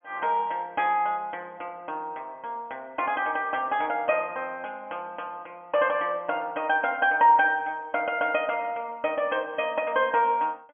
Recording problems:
treble cut off; nothing above 3.4 kHz

